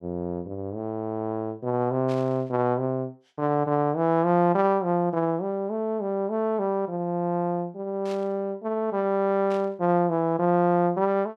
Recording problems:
burst of static; at 2 s, at 8 s and at 9.5 s; peak -14 dB vs average level

